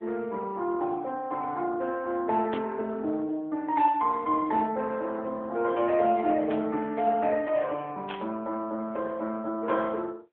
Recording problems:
phone line; 260 Hz to 3.6 kHz, AMR-NB
burst of static; at 2.5 s, at 6.5 s and at 8 s; peak -6 dB vs average level

